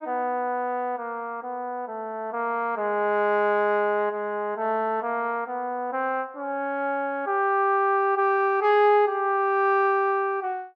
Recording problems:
none

